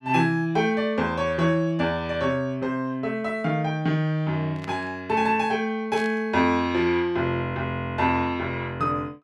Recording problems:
burst of static; at 4.5 s and at 6 s; peak -11 dB vs average level

